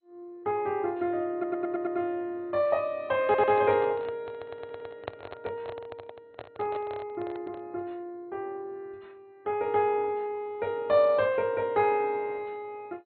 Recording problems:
lossy codec; MP2, log-spectral distance 2 dB, nothing above 3.6 kHz
stutter; at 1.5 s, at 3.5 s and at 4.5 s
handling noise; from 3 to 7.5 s; peak -2 dB vs average level

